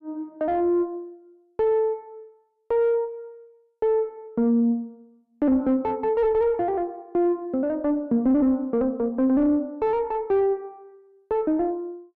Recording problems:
distorted audio; soft clipping, signal-to-distortion ratio 11 dB

